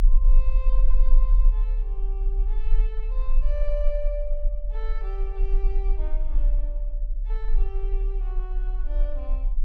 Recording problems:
low-frequency rumble; below 36 Hz, SNR -14 dB

